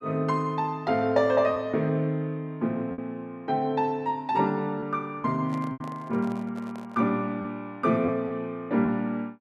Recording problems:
lost packets; 3% of the sound replaced, filled with repeated pitch periods
handling noise; from 5.5 to 7 s; peak -13 dB vs average level

